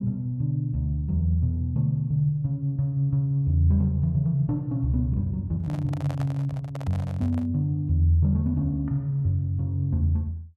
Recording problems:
handling noise; from 5.5 to 7.5 s; peak -9 dB vs average level

